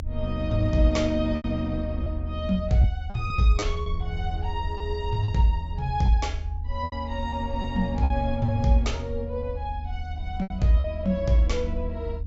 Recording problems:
treble cut off; nothing above 8 kHz
hum; 50 Hz, harmonics up to 300 Hz, SNR 19 dB
rumble; below 78 Hz, SNR 6 dB
lost packets; 5% of the sound replaced, filled with repeated pitch periods

